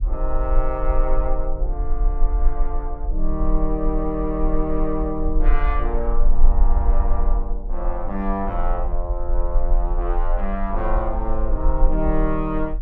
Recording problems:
low-frequency rumble; below 38 Hz, strongest tone 20 Hz, SNR -2 dB

